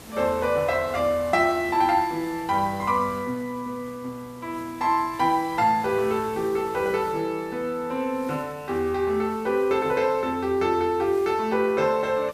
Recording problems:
background hiss; slope -4 dB per octave, SNR 21 dB

